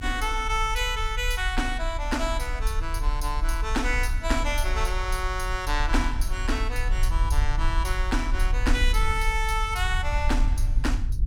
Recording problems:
low-frequency rumble; below 52 Hz, strongest tone 34 Hz, SNR 1 dB

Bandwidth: 17 kHz